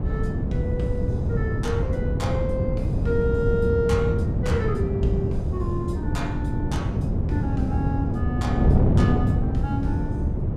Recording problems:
wind on the microphone; below 190 Hz, SNR -5 dB

